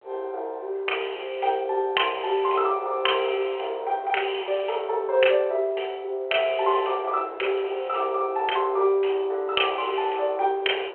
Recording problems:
telephone audio; 340 Hz to 3.2 kHz, G.726
wind noise; below 800 Hz, SNR 21 dB

